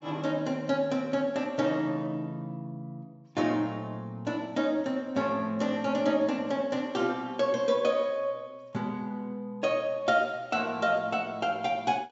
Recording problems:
treble cut off; nothing above 8 kHz

